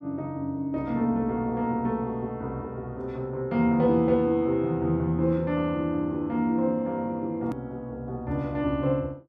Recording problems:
click at an edit; at 7.5 s

